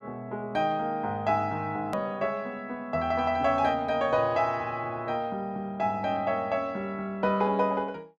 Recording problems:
hard cut with a click; at 2 s

